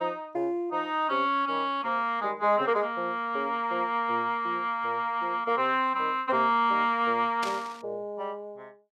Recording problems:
static burst; at 7.5 s; peak -4 dB vs average level

